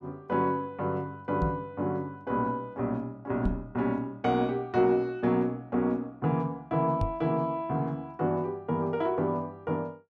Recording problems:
microphone thump; at 1.5 s, at 3.5 s and at 7 s; peak +3 dB vs average level

